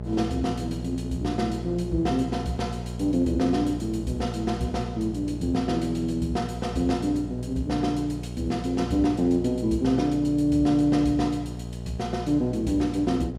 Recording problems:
mains hum; 60 Hz, harmonics up to 840 Hz, SNR 9 dB

